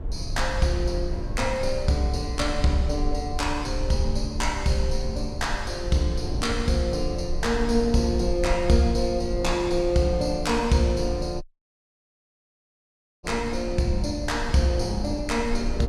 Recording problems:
low-frequency rumble; below 62 Hz, SNR 8 dB
wind on the microphone; below 430 Hz, SNR 15 dB
audio cutting out; at 11 s for 2 s

